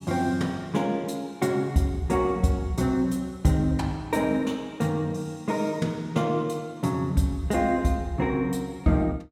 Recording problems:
none

